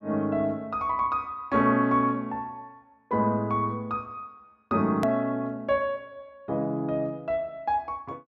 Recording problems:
click at an edit; at 5 s

